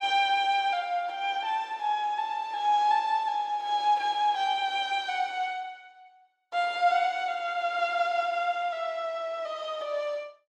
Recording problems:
none

